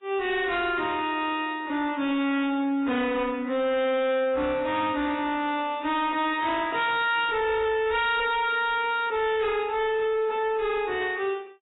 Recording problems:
lossy compression; AAC, log-spectral distance 3 dB, nothing above 3.3 kHz
distorted audio; hard clipping, uneven, signal-to-distortion ratio 7 dB

